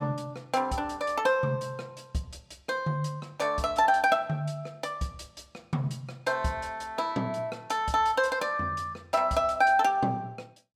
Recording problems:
none

